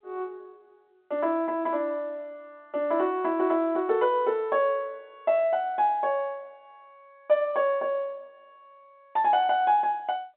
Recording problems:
telephone audio; 240 Hz to 3.8 kHz, G.711

